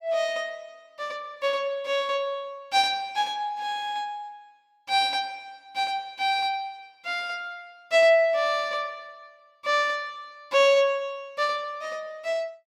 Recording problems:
none

